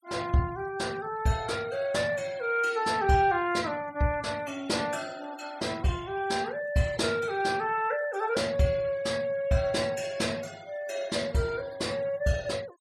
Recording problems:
noise reduction artefacts; signal-to-artefact ratio 22 dB

